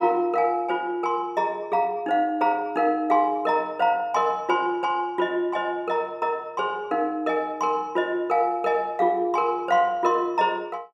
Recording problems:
none

